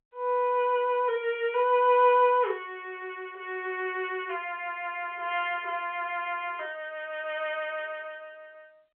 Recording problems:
phone line; 390 Hz to 3.4 kHz, G.711

